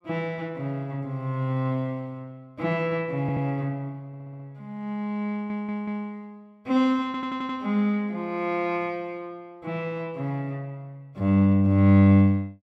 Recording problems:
stutter; 4 times, first at 3 s

